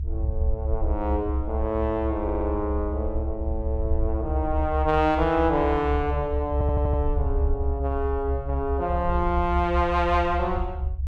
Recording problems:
rumble; below 72 Hz, strongest tone 66 Hz, SNR 3 dB
stutter; at 2 s and at 6.5 s

